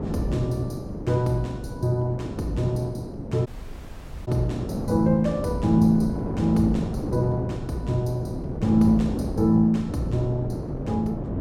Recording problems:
wind on the microphone; below 370 Hz, SNR 7 dB
dropout; at 3.5 s for 1 s

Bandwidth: 16.5 kHz